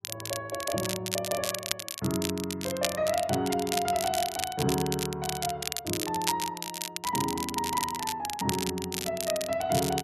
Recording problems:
crackling; vinyl, SNR 3 dB

